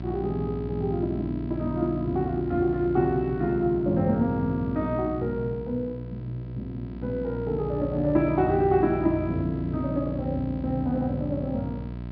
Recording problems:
treble cut off; nothing above 5.5 kHz
hum; 60 Hz, harmonics up to 1 kHz, SNR 9 dB

